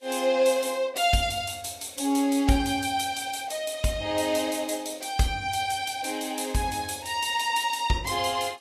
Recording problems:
codec artefacts; Vorbis, log-spectral distance 6 dB, nothing above 13.1 kHz

